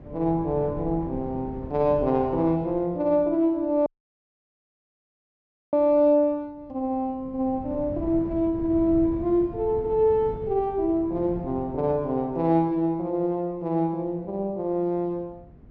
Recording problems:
low-pass filter; nothing above 8 kHz
wind noise; below 240 Hz, SNR 15 dB
dropout; at 4 s for 2 s

